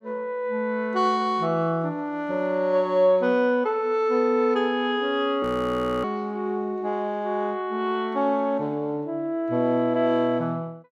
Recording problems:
frozen audio; at 5.5 s for 0.5 s

